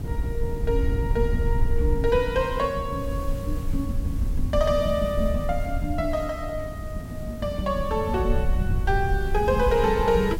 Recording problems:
background hiss; slope -3 dB per octave, SNR 21 dB
rumble; below 70 Hz, SNR 5 dB
wind on the microphone; below 150 Hz, SNR 10 dB

